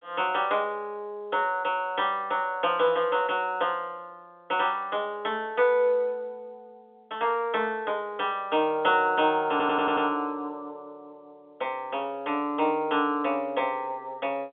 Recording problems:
phone line; 340 Hz to 3.6 kHz, G.711
audio stuttering; at 9.5 s

